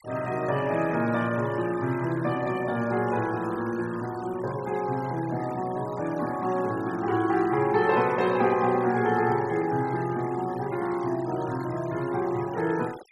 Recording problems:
noise reduction artefacts; signal-to-artefact ratio 18 dB

